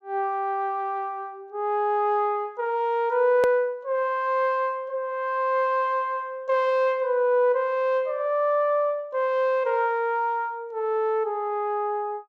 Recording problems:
hard cut with a click; at 3.5 s

